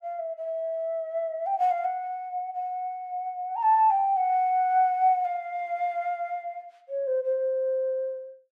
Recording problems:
none

